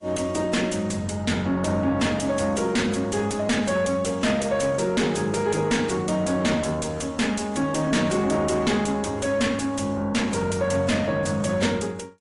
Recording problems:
lossy compression; AAC, then MP3, log-spectral distance 4 dB, nothing above 11 kHz
distorted audio; soft clipping, signal-to-distortion ratio 6 dB

